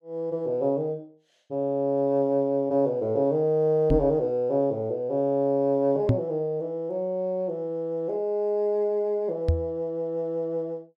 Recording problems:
microphone thump; at 4 s, at 6 s and at 9.5 s; peak +7 dB vs average level

